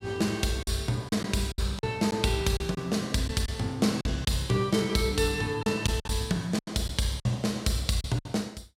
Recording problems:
packet loss; 8% of the sound replaced, filled with silence

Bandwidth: 16 kHz